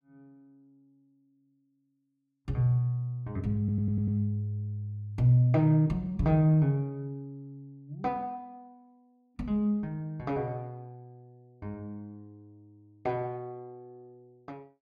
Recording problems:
stutter; at 3.5 s

